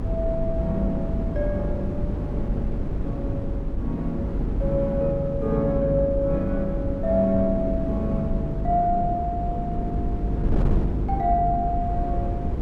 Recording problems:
mains hum; 50 Hz, harmonics up to 450 Hz, SNR 7 dB
wind noise; below 180 Hz, SNR 3 dB

